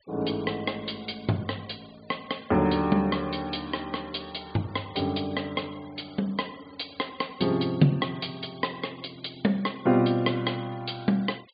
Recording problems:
treble cut off; nothing above 4.7 kHz
denoising artefacts; signal-to-artefact ratio 24 dB

